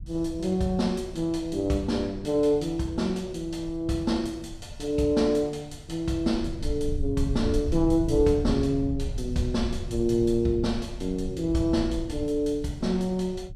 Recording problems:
rumble; below 88 Hz, SNR 10 dB

